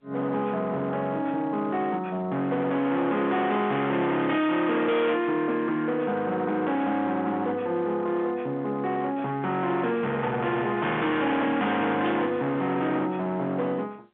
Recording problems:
phone line; 150 Hz to 3.7 kHz, G.711
distorted audio; hard clipping, signal-to-distortion ratio 8 dB
burst of static; at 12 s; peak -7 dB vs average level

